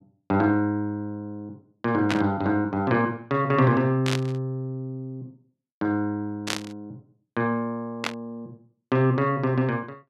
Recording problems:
burst of static; 4 times, first at 2 s; peak +2 dB vs average level

